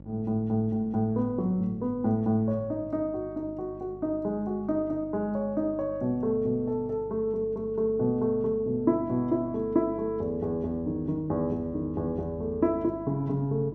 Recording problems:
electrical hum; 50 Hz, harmonics up to 850 Hz, SNR 18 dB

